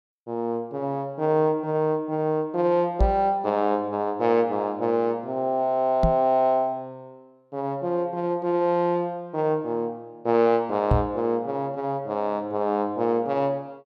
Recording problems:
knock on the microphone; at 3 s, at 6 s and at 11 s; peak +6 dB vs average level

